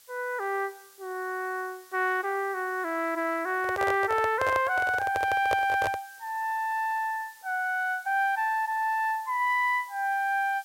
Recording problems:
background hiss; slope +2 dB per octave, SNR 24 dB
handling noise; from 3.5 to 6 s; peak +2 dB vs average level

